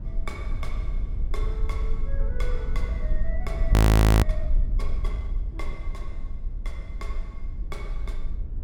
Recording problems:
rumble; below 80 Hz, SNR -14 dB
audio freezing; at 3.5 s

